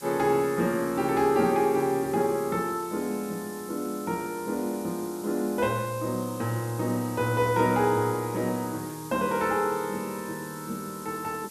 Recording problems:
hiss; SNR 16 dB

